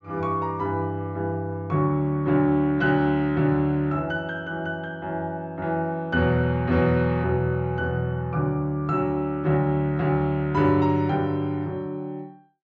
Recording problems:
low-pass filter; nothing above 8 kHz

